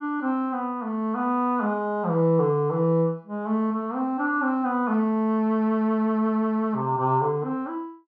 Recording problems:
none

